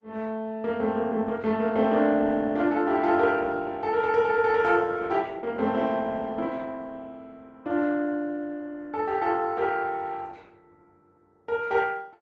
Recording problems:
lossy compression; Opus, log-spectral distance 3 dB

